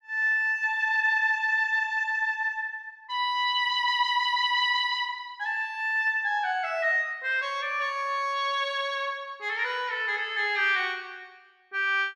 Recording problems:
none

